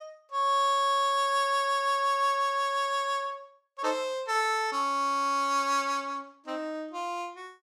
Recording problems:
none

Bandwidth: 15.5 kHz